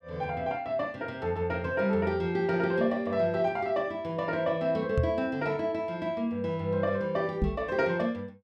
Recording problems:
microphone thump; at 5 s and at 7.5 s; peak +5 dB vs average level

